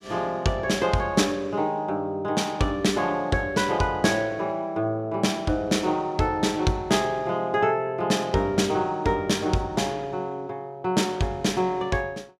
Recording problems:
none

